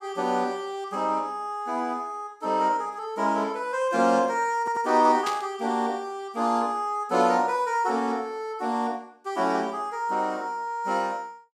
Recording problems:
stutter; at 4.5 s
burst of static; at 5.5 s; peak -2 dB vs average level

